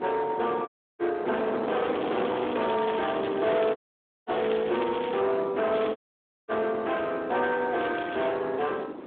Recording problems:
telephone audio; 260 Hz to 3.7 kHz, Speex
distortion; soft clipping, signal-to-distortion ratio 8 dB
wind noise; below 900 Hz, SNR 11 dB
audio cutting out; at 0.5 s, at 4 s for 0.5 s and at 6 s for 0.5 s
crackling; 4 times, first at 2 s; loose cable, SNR 15 dB

